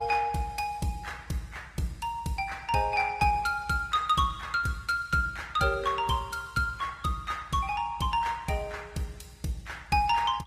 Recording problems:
lossy compression; Opus, log-spectral distance 3 dB, nothing above 15.1 kHz

